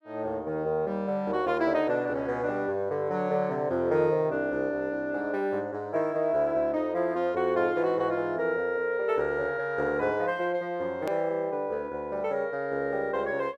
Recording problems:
hard cut with a click; at 11 s

